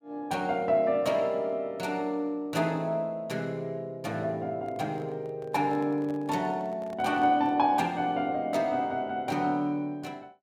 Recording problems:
handling noise; from 4.5 to 7.5 s; peak -12 dB vs average level

